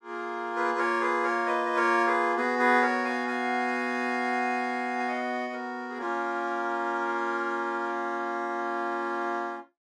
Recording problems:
none

